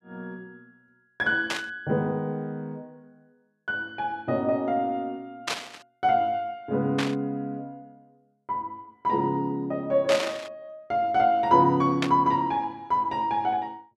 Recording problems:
static burst; 5 times, first at 1.5 s; peak +2 dB vs average level

